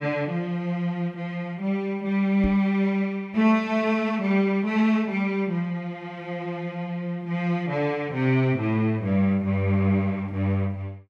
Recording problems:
microphone thump; at 2.5 s; peak -1 dB vs average level

